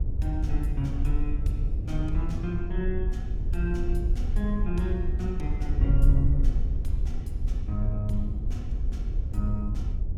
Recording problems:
wind on the microphone; below 68 Hz, SNR -4 dB

